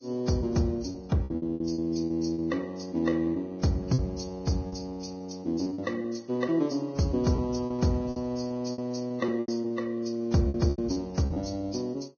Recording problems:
lossy codec; Vorbis, log-spectral distance 3 dB, nothing above 6.5 kHz
lost packets; 9% of the sound replaced, filled with repeated pitch periods

